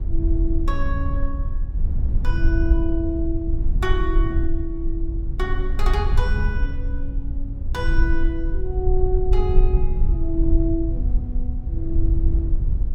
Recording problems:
rumble; below 58 Hz, SNR -5 dB

